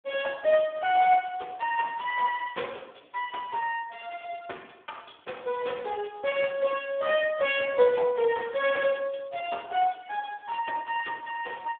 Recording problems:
phone line; 300 Hz to 3.4 kHz, Speex

